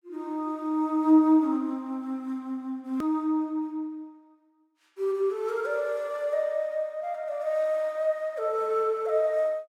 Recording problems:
click at an edit; at 3 s

